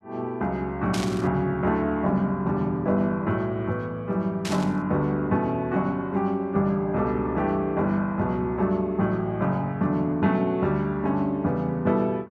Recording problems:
burst of static; at 1 s and at 4.5 s; peak -3 dB vs average level

